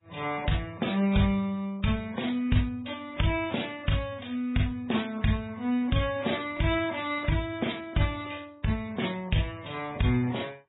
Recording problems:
codec artefacts; AAC, then MP3, log-spectral distance 6 dB, nothing above 3.8 kHz

